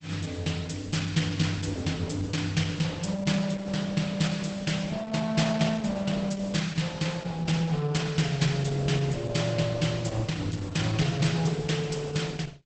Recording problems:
lossy compression; Opus, log-spectral distance 5 dB, nothing above 8 kHz

